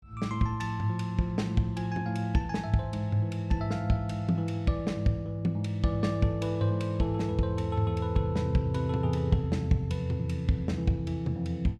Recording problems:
none

